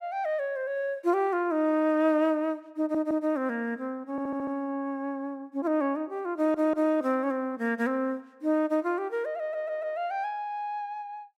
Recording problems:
audio stuttering; 4 times, first at 3 s

